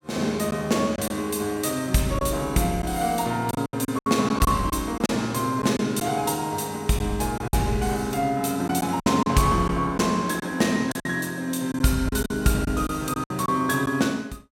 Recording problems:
packet loss; 7% of the sound replaced, filled with silence

